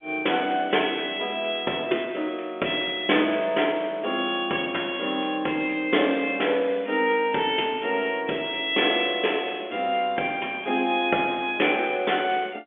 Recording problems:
phone line; 240 Hz to 3.5 kHz, G.711

